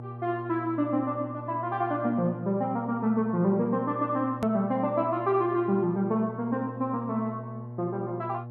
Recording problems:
hum; 60 Hz, harmonics up to 840 Hz, SNR 12 dB
hard cut with a click; at 4.5 s

